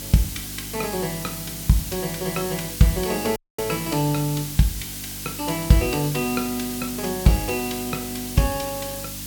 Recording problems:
electrical hum; 50 Hz, harmonics up to 300 Hz, SNR 16 dB
background hiss; slope +2 dB per octave, SNR 7 dB
audio cutting out; at 3.5 s

